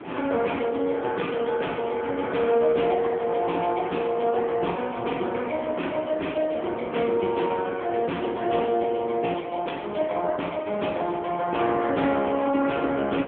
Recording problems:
phone line; 220 Hz to 3.4 kHz, AMR-NB
wind noise; below 860 Hz, SNR 15 dB

